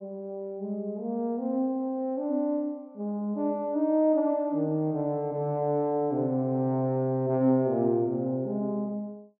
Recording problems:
none

